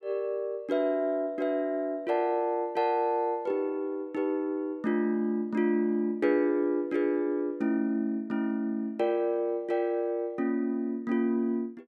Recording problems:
none

